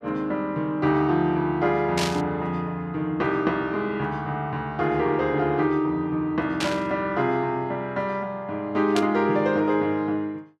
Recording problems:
static burst; at 2 s, at 6.5 s and at 9 s; peak +1 dB vs average level

